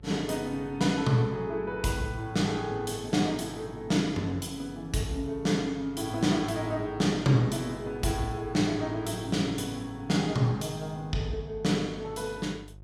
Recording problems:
hum; 50 Hz, harmonics up to 550 Hz, SNR 20 dB

